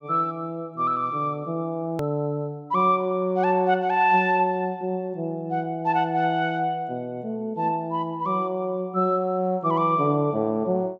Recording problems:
treble missing; nothing above 7.9 kHz
hard cut with a click; at 2 s

